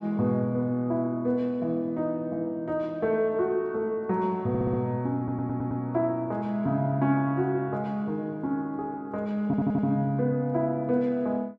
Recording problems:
audio stuttering; at 4.5 s, at 5 s and at 9.5 s

